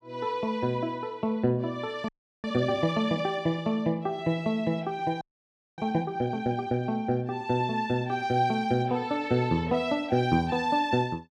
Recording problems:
audio freezing; at 2 s and at 5 s for 0.5 s

